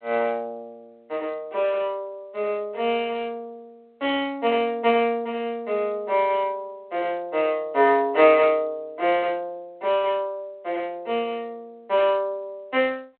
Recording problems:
phone line; 320 Hz to 3.3 kHz, G.726

